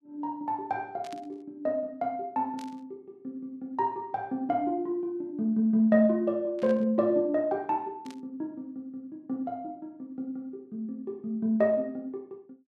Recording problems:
burst of static; 4 times, first at 1 s; peak -14 dB vs average level

